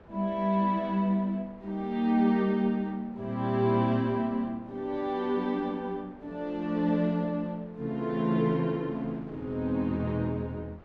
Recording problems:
wind on the microphone; below 840 Hz, SNR 25 dB

